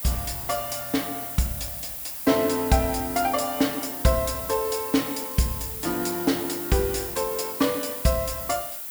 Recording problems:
hiss; slope 0 dB per octave, SNR 5 dB

